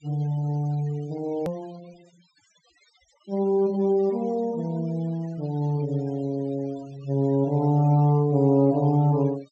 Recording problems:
treble missing; nothing above 8 kHz
denoising artefacts; signal-to-artefact ratio 27 dB
click at an edit; at 1.5 s

